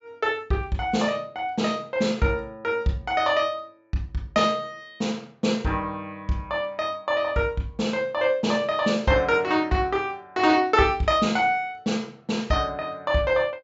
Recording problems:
low-pass filter; nothing above 8 kHz

